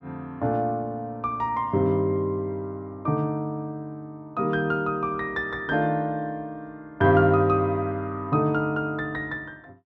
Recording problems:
none

